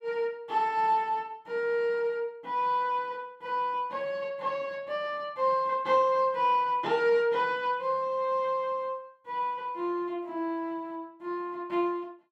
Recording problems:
none

